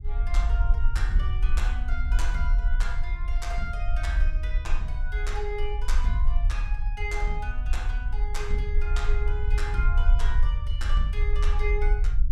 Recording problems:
low-frequency rumble; below 50 Hz, SNR -8 dB

